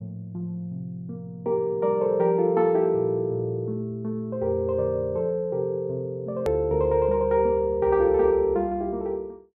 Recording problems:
edit click; at 6.5 s

